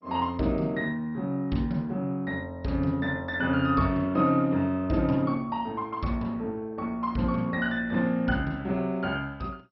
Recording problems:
lossy codec; MP2, log-spectral distance 2 dB, nothing above 5.5 kHz

